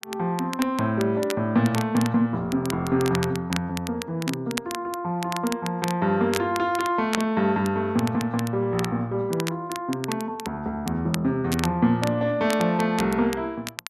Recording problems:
crackling; vinyl, SNR 12 dB

